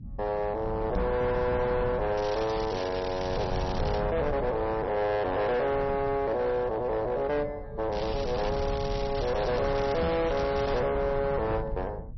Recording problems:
lossy codec; MP3, log-spectral distance 4 dB, nothing above 5.8 kHz
distortion; hard clipping, signal-to-distortion ratio 11 dB
rumble; below 170 Hz, SNR 9 dB
microphone thump; at 1 s and at 10 s; peak +2 dB vs average level
crackle; from 2 to 4 s and from 8 to 11 s; loose cable, SNR 14 dB

